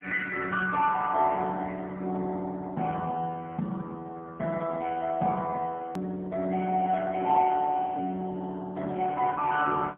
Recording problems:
telephone audio; 150 Hz to 2.3 kHz, AMR-NB, then MP3
hard cut with a click; at 6 s

